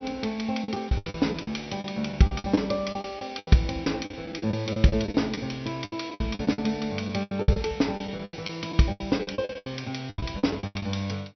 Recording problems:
treble cut off; nothing above 5.9 kHz
lost packets; 18% of the sound replaced, filled with the last packet

